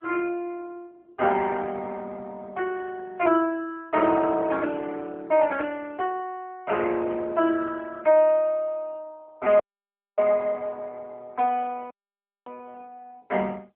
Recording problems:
telephone audio; 260 Hz to 3.4 kHz, AMR-NB
audio cutting out; at 9.5 s for 0.5 s and at 12 s for 0.5 s

